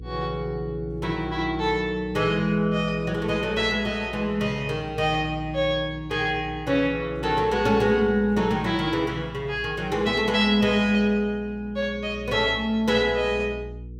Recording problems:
hum; 60 Hz, harmonics up to 480 Hz, SNR 16 dB

